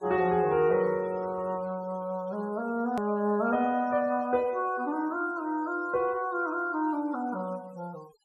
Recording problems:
noise reduction artefacts; signal-to-artefact ratio 25 dB
edit click; at 3 s

